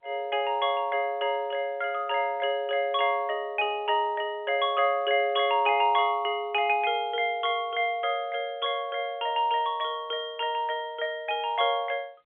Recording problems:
telephone audio; 260 Hz to 3.5 kHz, G.711

